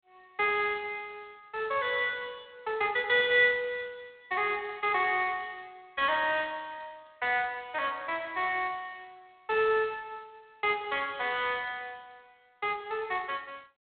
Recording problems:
telephone audio; 320 Hz to 3.7 kHz, G.726

